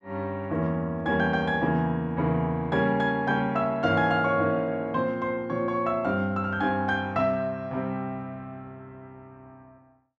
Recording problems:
none

